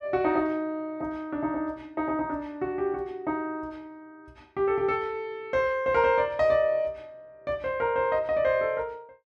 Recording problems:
none

